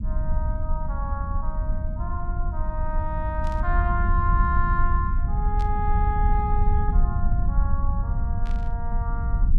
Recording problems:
low-frequency rumble; below 72 Hz, SNR -5 dB
static burst; at 3.5 s, at 5.5 s and at 8.5 s; peak -10 dB vs average level

